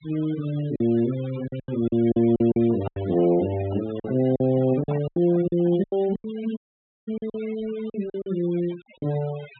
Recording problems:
low-pass filter; nothing above 3.7 kHz
denoising artefacts; signal-to-artefact ratio 20 dB
lost packets; 12% of the sound replaced, filled with silence
microphone handling noise; from 2.5 to 6 s; peak -7 dB vs average level
audio cutting out; at 6.5 s for 0.5 s

